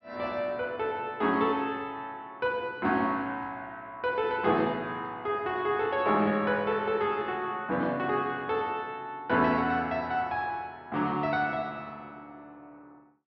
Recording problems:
low-pass filter; nothing above 5.5 kHz

